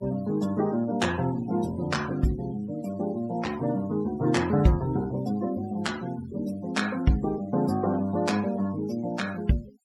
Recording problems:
denoising artefacts; signal-to-artefact ratio 19 dB

